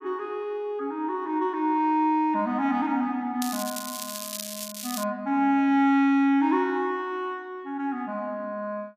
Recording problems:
crackling; from 3.5 to 5 s; loose cable, SNR 8 dB

